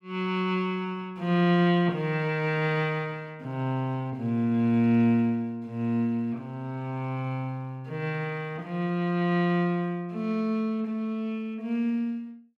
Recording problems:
none

